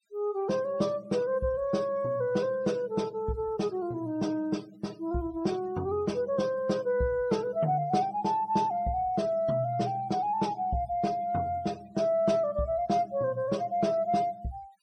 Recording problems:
noise reduction artefacts; signal-to-artefact ratio 24 dB

